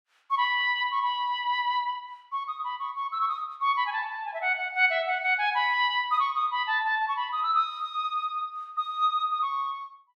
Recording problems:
none

